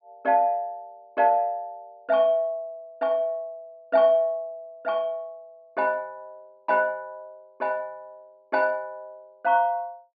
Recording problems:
low-pass filter; nothing above 5.5 kHz

